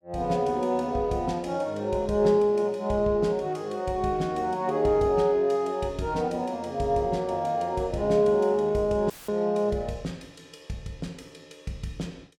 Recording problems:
dropout; at 9 s; filled with static

